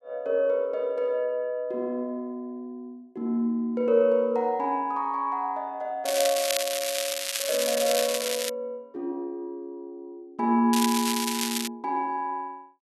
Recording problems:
crackle; from 6 to 8.5 s and at 11 s; loose cable, SNR 2 dB

